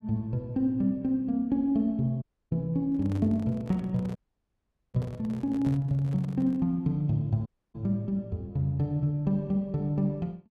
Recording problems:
dropout; at 2 s, at 4 s for 1 s and at 7.5 s
microphone handling noise; from 3 to 6.5 s; peak -10 dB vs average level

